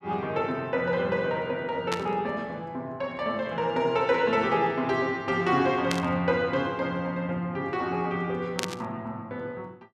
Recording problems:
burst of static; at 2 s, at 6 s and at 8.5 s; peak +2 dB vs average level

